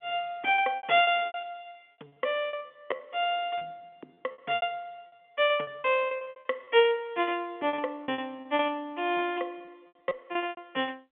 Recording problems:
telephone audio; 260 Hz to 3.6 kHz, G.711
lost packets; 18% of the sound replaced, filled with repeated pitch periods

